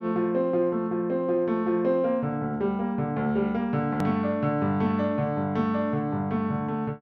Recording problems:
hard cut with a click; at 4 s

